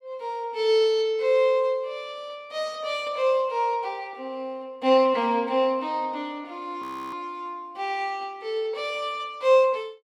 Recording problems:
frozen audio; at 7 s

